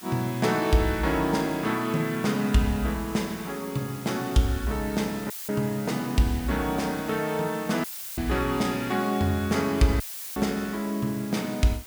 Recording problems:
background hiss; slope 0 dB per octave, SNR 16 dB
audio cutting out; at 5.5 s, at 8 s and at 10 s; filled with static

